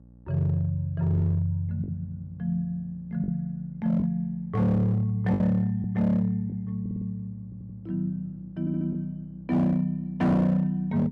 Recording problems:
distortion; hard clipping, signal-to-distortion ratio 10 dB
electrical hum; 60 Hz, harmonics up to 600 Hz, SNR 24 dB
lost packets; 2% of the sound replaced, filled with the last packet
audio stuttering; at 7 s, at 7.5 s and at 8.5 s

